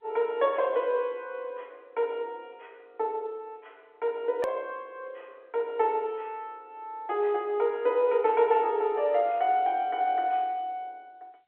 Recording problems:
phone line; 280 Hz to 3.8 kHz, G.711
hard cut with a click; at 4.5 s

